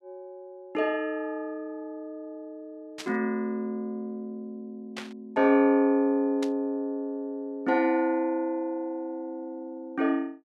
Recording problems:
static burst; at 3 s, at 5 s and at 6.5 s; peak -5 dB vs average level

